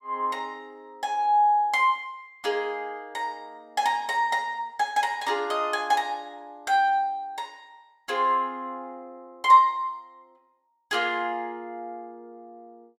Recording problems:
none

